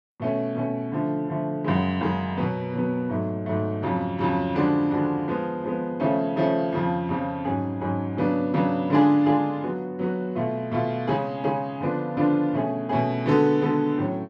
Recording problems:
none

